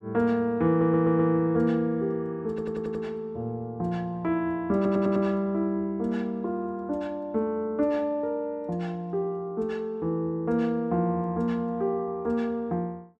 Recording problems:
stutter; at 0.5 s, at 2.5 s and at 5 s

